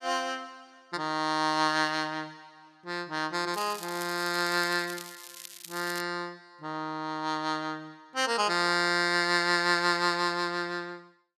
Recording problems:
crackle; from 3.5 to 6 s; loose cable, SNR 14 dB

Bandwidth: 14 kHz